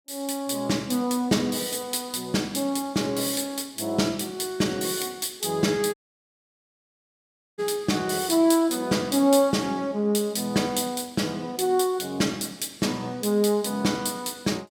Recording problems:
audio cutting out; at 6 s for 1.5 s

